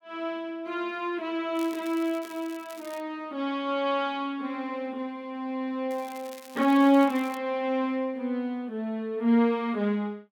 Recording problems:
crackle; from 1.5 to 3 s and from 6 to 7.5 s; loose cable, SNR 21 dB

